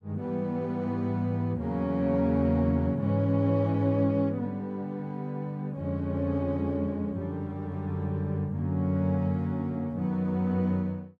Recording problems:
none

